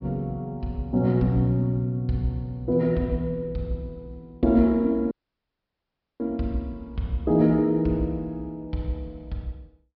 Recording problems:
low-pass filter; nothing above 5.5 kHz
dropout; at 5 s for 1 s

